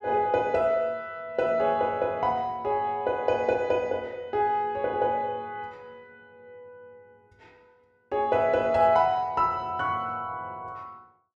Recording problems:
none

